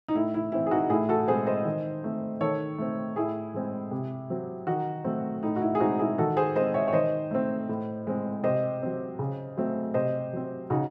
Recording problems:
none

